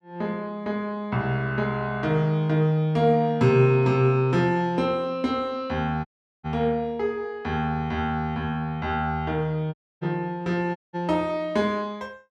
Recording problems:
audio cutting out; at 6 s, at 9.5 s and at 11 s

